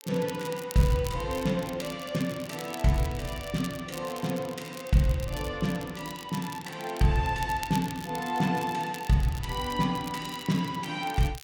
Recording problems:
crackle; vinyl, SNR 15 dB

